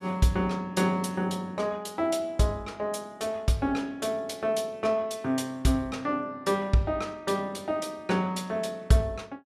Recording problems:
none

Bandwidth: 14.5 kHz